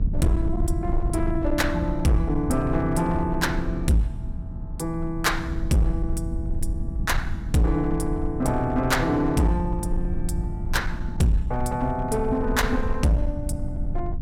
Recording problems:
distortion; hard clipping, uneven, signal-to-distortion ratio 11 dB
hum; 60 Hz, harmonics up to 900 Hz, SNR 19 dB
rumble; below 82 Hz, SNR 5 dB

